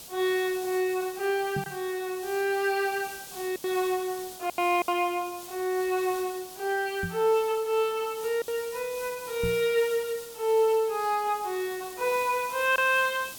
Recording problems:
hiss; SNR 14 dB
packet loss; 2% of the sound replaced, filled with silence
microphone thump; at 1.5 s, at 7 s and at 9.5 s; peak -2 dB vs average level

